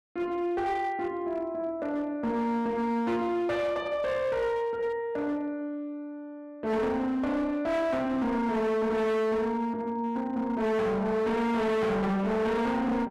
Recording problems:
distortion; hard clipping, signal-to-distortion ratio 7 dB

